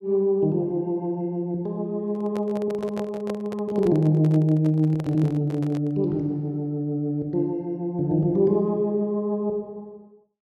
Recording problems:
handling noise; from 2 to 6 s; peak -6 dB vs average level

